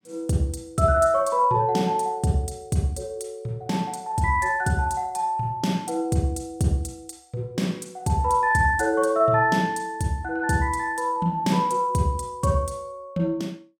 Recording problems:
none

